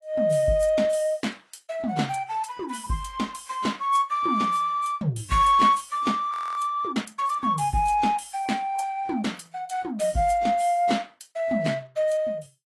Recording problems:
lossy compression; AAC, log-spectral distance 3 dB, nothing above 11 kHz
frozen audio; at 6.5 s

